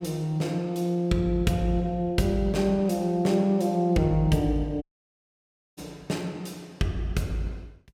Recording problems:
dropout; at 5 s for 1 s

